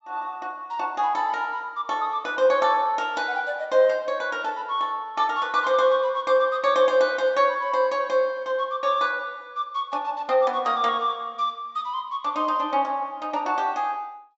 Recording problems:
treble missing; nothing above 7.7 kHz

